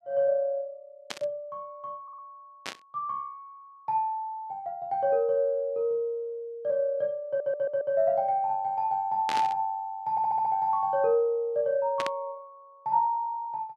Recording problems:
static burst; 4 times, first at 1 s; peak -2 dB vs average level
audio stuttering; at 2 s, at 7.5 s and at 10 s

